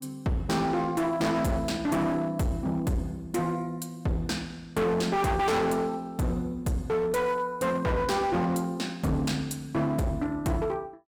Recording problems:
distortion; hard clipping, signal-to-distortion ratio 7 dB

